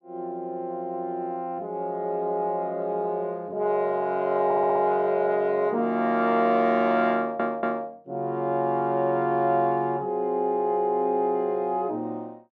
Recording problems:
stutter; at 4.5 s and at 7 s

